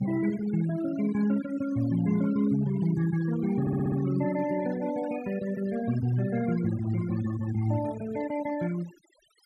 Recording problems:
denoising artefacts; signal-to-artefact ratio 15 dB
audio stuttering; at 3.5 s

